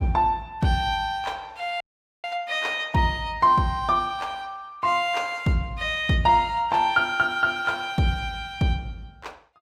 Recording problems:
dropout; at 2 s

